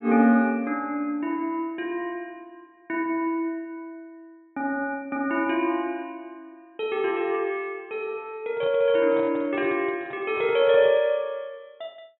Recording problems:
handling noise; from 8.5 to 11 s; peak -11 dB vs average level

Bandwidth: 4 kHz